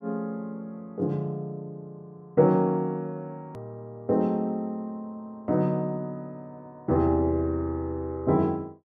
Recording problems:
click at an edit; at 3.5 s

